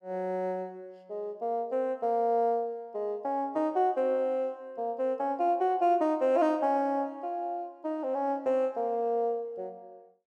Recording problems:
none

